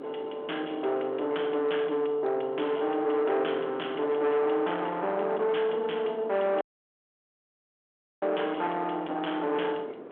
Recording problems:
telephone audio; 320 Hz to 3.4 kHz, G.726
distorted audio; soft clipping, signal-to-distortion ratio 9 dB
wind noise; below 870 Hz, SNR 15 dB
dropout; at 6.5 s for 1.5 s

